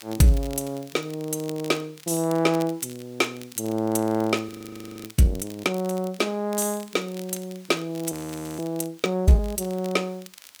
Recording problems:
hiss; slope +1 dB per octave, SNR 27 dB
crackle; vinyl, SNR 20 dB
frozen audio; at 4.5 s for 0.5 s and at 8 s

